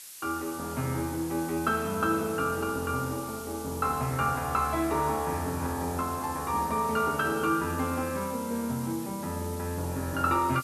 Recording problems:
hiss; slope +4 dB per octave, SNR 13 dB

